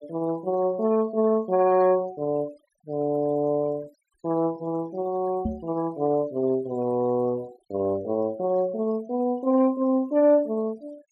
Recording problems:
noise reduction artefacts; signal-to-artefact ratio 25 dB
microphone bump; at 5.5 s; peak 0 dB vs average level

